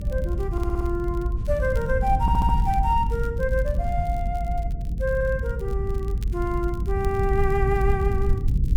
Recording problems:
mains hum; 60 Hz, harmonics up to 480 Hz, SNR 20 dB
rumble; below 88 Hz, SNR 0 dB
crackling; vinyl, SNR 26 dB
audio stuttering; at 0.5 s, at 2 s and at 5 s

